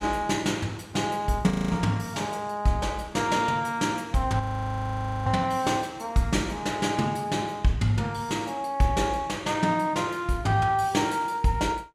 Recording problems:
audio freezing; at 1.5 s and at 4.5 s for 1 s

